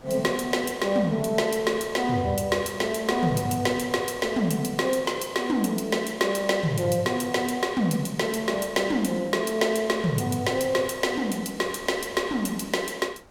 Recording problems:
wind on the microphone; below 1.2 kHz, SNR 23 dB

